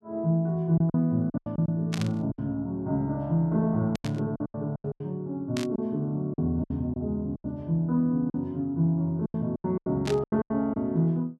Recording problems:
packet loss; 12% of the sound replaced, filled with silence
static burst; 4 times, first at 2 s; peak -3 dB vs average level

